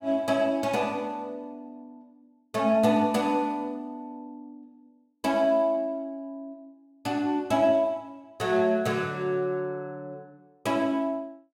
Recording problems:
none

